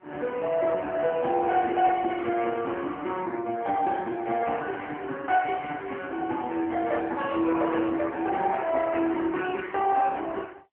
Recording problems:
phone line; 280 Hz to 3 kHz, AMR-NB

